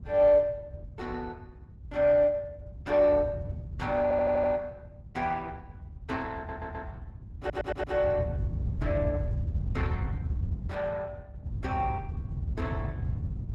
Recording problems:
lossy compression; Opus, log-spectral distance 2 dB, nothing above 11.6 kHz
wind on the microphone; below 120 Hz, SNR 7 dB
audio stuttering; at 4 s, at 6.5 s and at 7.5 s

